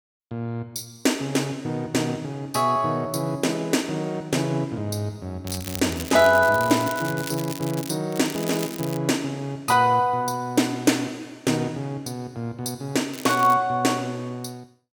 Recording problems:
crackle; from 5.5 to 8 s, at 8 s and at 13 s; loose cable, SNR 12 dB

